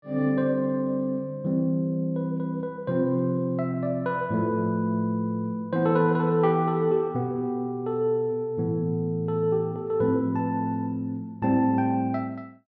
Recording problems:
none

